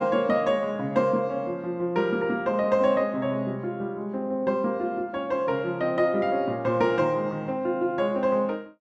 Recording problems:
none

